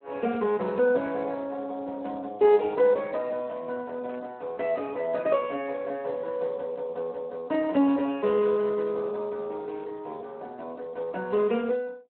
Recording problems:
telephone audio; 240 Hz to 3.3 kHz, Speex
burst of static; at 2 s and at 4 s; peak -14 dB vs average level

